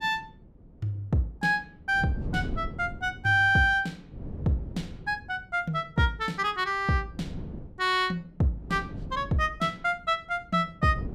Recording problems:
wind noise; below 220 Hz, SNR 13 dB

